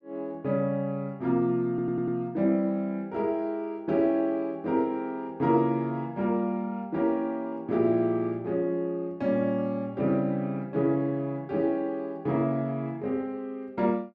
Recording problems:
stutter; at 1.5 s

